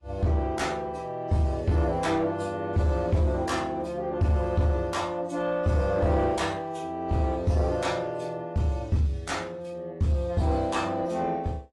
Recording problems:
lossy compression; AAC, log-spectral distance 2 dB, nothing above 11.3 kHz
distortion; soft clipping, signal-to-distortion ratio 11 dB

